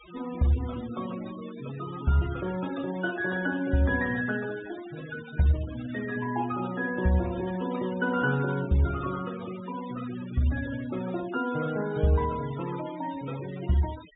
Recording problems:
treble cut off; nothing above 4 kHz
denoising artefacts; signal-to-artefact ratio 16 dB

